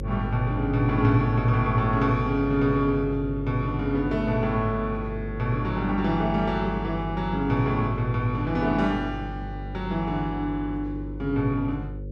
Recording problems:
hum; 50 Hz, harmonics up to 550 Hz, SNR 9 dB

